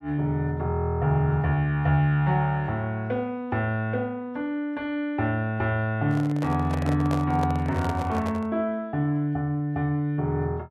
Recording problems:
microphone handling noise; from 6 to 8.5 s; peak -3 dB vs average level

